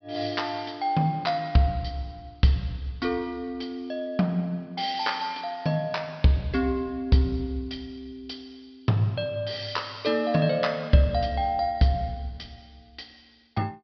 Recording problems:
treble missing; nothing above 5.5 kHz

